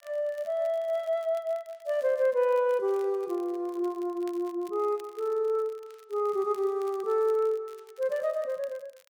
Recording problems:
crackling; vinyl, SNR 28 dB

